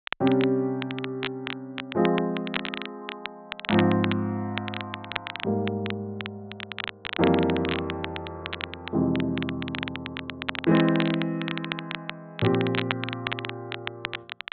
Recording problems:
treble missing; nothing above 4 kHz
crackle; vinyl, SNR 7 dB

